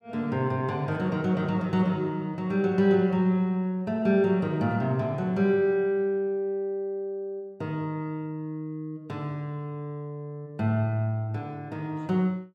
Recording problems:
none

